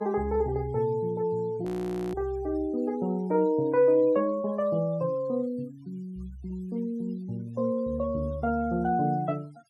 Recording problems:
denoising artefacts; signal-to-artefact ratio 27 dB
audio freezing; at 1.5 s

